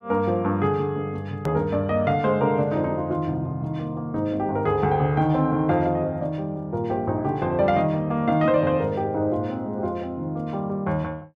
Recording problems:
edit click; at 1.5 s

